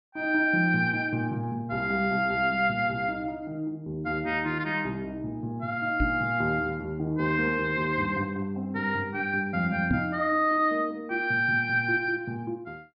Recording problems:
treble cut off; nothing above 5.5 kHz
knock on the microphone; at 6 s and at 10 s; peak +4 dB vs average level

